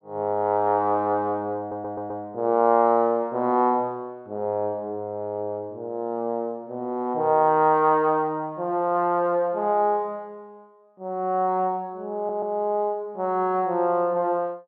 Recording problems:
audio stuttering; at 1.5 s and at 12 s

